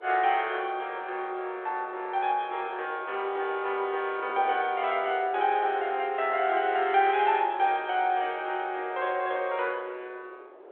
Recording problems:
phone line; 320 Hz to 3.5 kHz, G.726
wind on the microphone; below 670 Hz, SNR 20 dB

